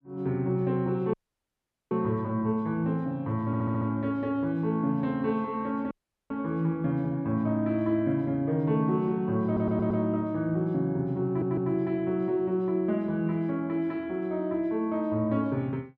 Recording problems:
dropout; at 1 s for 1 s and at 6 s
stutter; at 3.5 s, at 9.5 s and at 11 s

